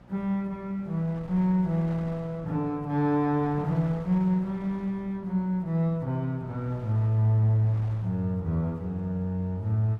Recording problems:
hum; 60 Hz, harmonics up to 1.2 kHz, SNR 25 dB
wind noise; below 860 Hz, SNR 22 dB

